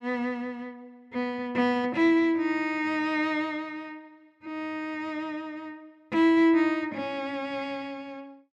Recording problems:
none

